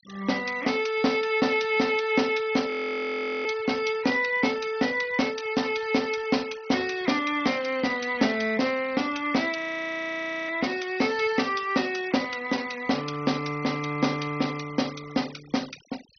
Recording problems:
treble cut off; nothing above 6.2 kHz
denoising artefacts; signal-to-artefact ratio 19 dB
frozen audio; at 2.5 s for 1 s and at 9.5 s for 1 s

